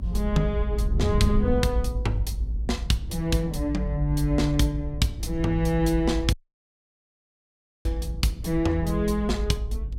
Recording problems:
rumble; below 62 Hz, strongest tone 52 Hz, SNR 5 dB
wind noise; below 110 Hz, SNR 8 dB
audio cutting out; at 6.5 s for 1.5 s

